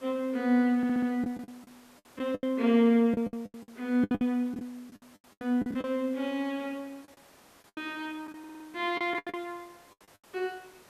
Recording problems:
hiss; slope -4 dB per octave, SNR 27 dB
lost packets; 12% of the sound replaced, filled with the last packet
audio stuttering; at 1 s and at 8.5 s

